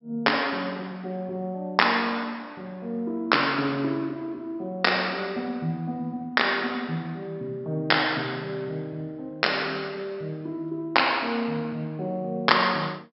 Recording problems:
low-pass filter; nothing above 5.4 kHz

